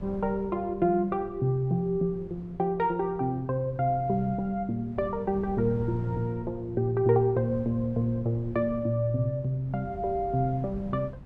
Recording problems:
wind noise; below 180 Hz, SNR 17 dB

